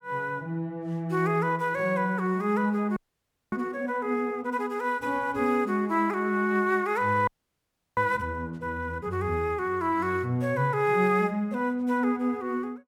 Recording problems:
frozen audio; at 3 s for 0.5 s and at 7.5 s for 0.5 s

